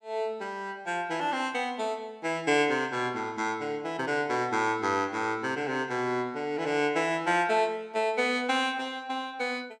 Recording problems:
none

